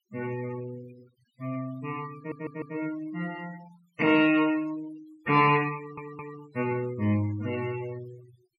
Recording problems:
noise reduction artefacts; signal-to-artefact ratio 19 dB
stutter; at 2 s and at 6 s

